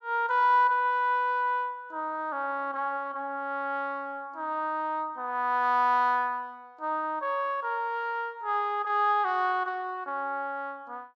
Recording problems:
none

